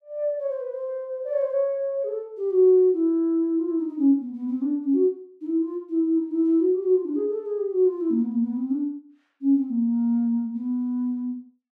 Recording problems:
none

